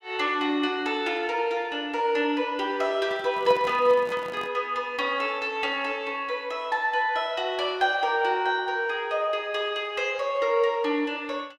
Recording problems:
handling noise; from 3 to 4.5 s; peak -6 dB vs average level

